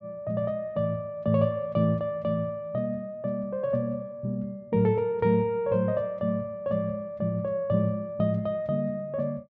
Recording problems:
none

